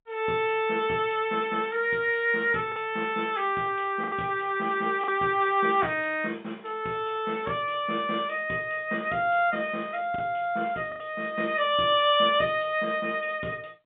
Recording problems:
telephone audio; 150 Hz to 3.7 kHz, G.711
packet loss; 2% of the sound replaced, filled with the last packet

